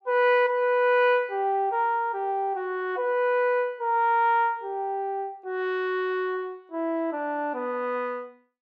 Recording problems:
none

